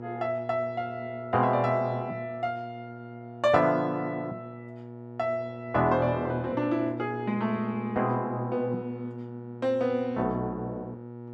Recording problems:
hum; 60 Hz, harmonics up to 1.3 kHz, SNR 11 dB

